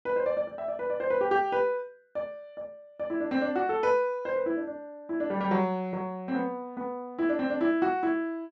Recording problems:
none

